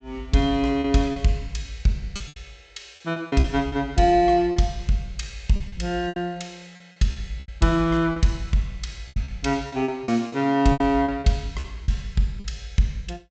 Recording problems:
treble missing; nothing above 8 kHz
lost packets; 10% of the sound replaced, filled with repeated pitch periods

